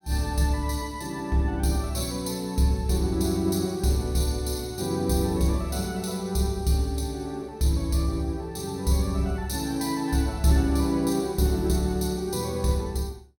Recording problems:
none

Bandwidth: 17.5 kHz